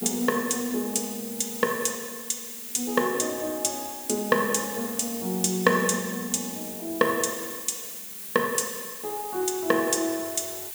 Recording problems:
hiss; slope +2 dB per octave, SNR 8 dB

